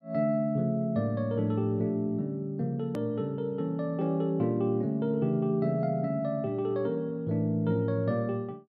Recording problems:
click at an edit; at 3 s

